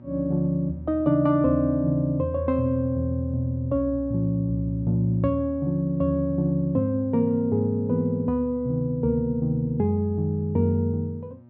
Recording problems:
hum; 60 Hz, harmonics up to 960 Hz, SNR 24 dB

